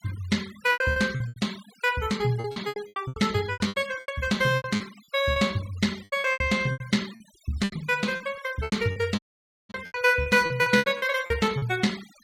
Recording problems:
noise reduction artefacts; signal-to-artefact ratio 20 dB
lost packets; 18% of the sound replaced, filled with repeated pitch periods
dropout; at 9 s for 0.5 s

